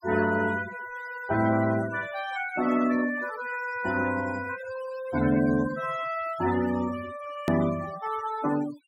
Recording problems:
denoising artefacts; signal-to-artefact ratio 13 dB
hard cut with a click; at 7.5 s

